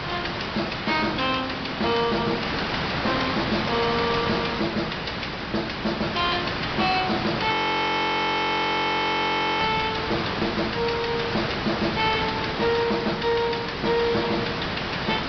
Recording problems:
low-pass filter; nothing above 5.3 kHz
codec artefacts; MP3, log-spectral distance 12 dB
distorted audio; hard clipping, uneven, signal-to-distortion ratio 10 dB
hum; 60 Hz, harmonics up to 420 Hz, SNR 22 dB
hiss; SNR 2 dB
frozen audio; at 7.5 s for 2 s

